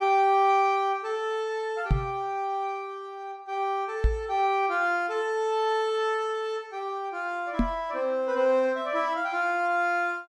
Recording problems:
knock on the microphone; at 2 s, at 4 s and at 7.5 s; peak +6 dB vs average level

